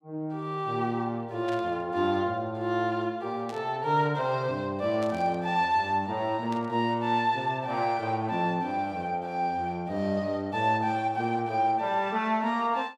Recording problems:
static burst; 4 times, first at 1.5 s; peak -12 dB vs average level

